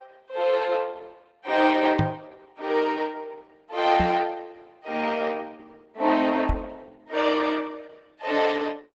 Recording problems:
lossy compression; Opus, log-spectral distance 5 dB, nothing above 7.8 kHz
microphone bump; at 2 s, at 4 s and at 6.5 s; peak +4 dB vs average level

